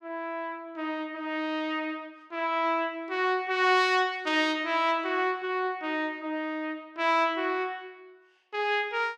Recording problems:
none

